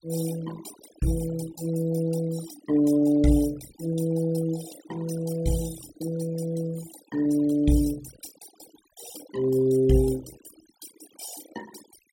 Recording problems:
noise reduction artefacts; signal-to-artefact ratio 17 dB

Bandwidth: 16.5 kHz